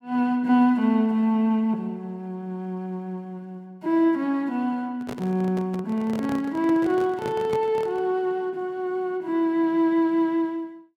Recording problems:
microphone handling noise; from 5 to 8 s; peak -5 dB vs average level

